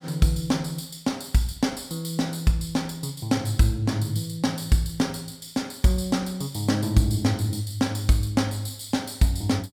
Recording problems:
none

